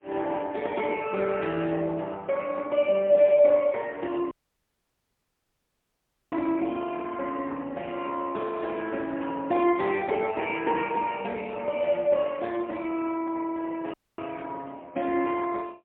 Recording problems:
phone line; 260 Hz to 3.1 kHz, AMR-NB, then MP3
dropout; at 4.5 s for 2 s and at 14 s

